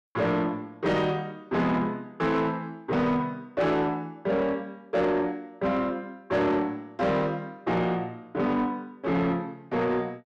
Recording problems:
distortion; soft clipping, signal-to-distortion ratio 11 dB

